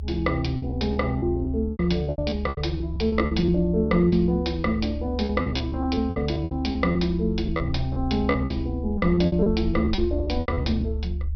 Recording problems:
treble missing; nothing above 5.5 kHz
rumble; below 74 Hz, strongest tone 72 Hz, SNR 7 dB
lost packets; 15% of the sound replaced, filled with repeated pitch periods

